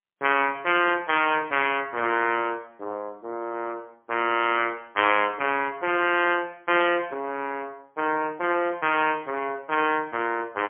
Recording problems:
telephone audio; 240 Hz to 3.3 kHz, AMR-NB, then MP3

